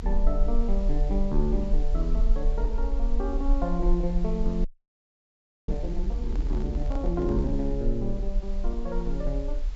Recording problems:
treble cut off; nothing above 8 kHz
background hiss; slope -2 dB per octave, SNR 21 dB
low-frequency rumble; below 40 Hz, strongest tone 26 Hz, SNR -1 dB
audio freezing; at 4.5 s for 1 s
microphone handling noise; from 6.5 to 7.5 s; peak -10 dB vs average level

